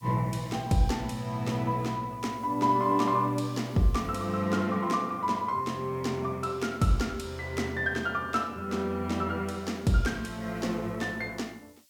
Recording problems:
background hiss; slope +5 dB per octave, SNR 29 dB

